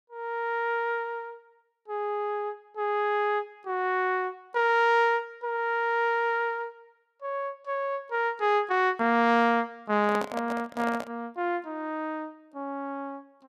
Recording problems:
microphone handling noise; from 10 to 11 s; peak -3 dB vs average level

